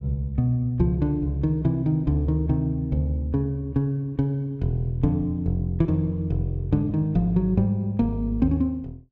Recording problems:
none

